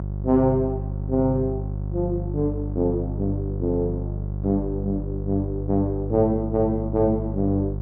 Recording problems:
hum; 50 Hz, harmonics up to 550 Hz, SNR 5 dB

